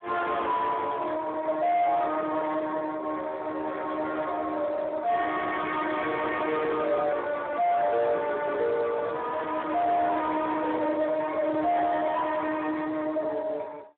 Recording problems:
telephone audio; 260 Hz to 3.8 kHz, Speex
distorted audio; soft clipping, signal-to-distortion ratio 7 dB
handling noise; from 7 to 9.5 s; peak -3 dB vs average level

